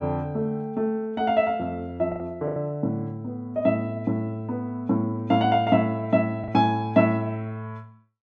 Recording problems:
lost packets; 3% of the sound replaced, filled with the last packet

